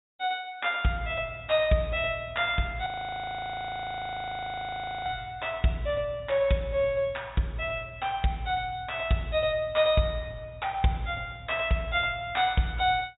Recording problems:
low-pass filter; nothing above 4 kHz
audio freezing; at 3 s for 2 s

